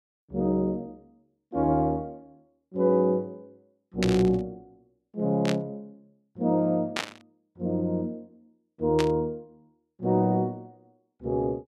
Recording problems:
burst of static; 4 times, first at 4 s; peak +2 dB vs average level

